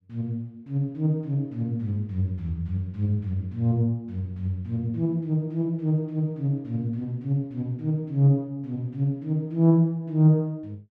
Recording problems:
none

